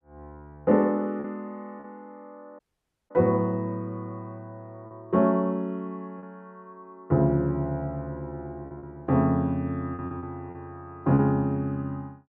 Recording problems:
packet loss; 4% of the sound replaced, filled with repeated pitch periods
dropout; at 2.5 s for 0.5 s

